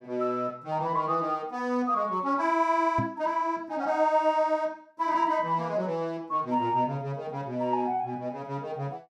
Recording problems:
knock on the microphone; at 3 s; peak +1 dB vs average level

